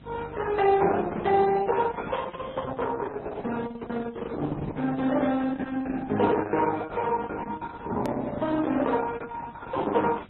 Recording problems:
codec artefacts; Opus, then MP3, log-spectral distance 4 dB
hum; 50 Hz, harmonics up to 350 Hz, SNR 20 dB
hiss; SNR 28 dB
hard cut with a click; at 8 s

